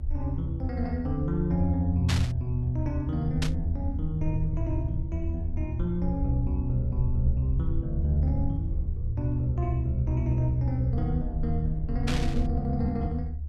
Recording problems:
rumble; below 76 Hz, SNR 4 dB
burst of static; at 2 s, at 3.5 s and at 12 s; peak +2 dB vs average level

